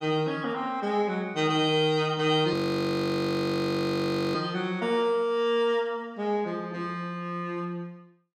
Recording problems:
frozen audio; at 2.5 s for 2 s

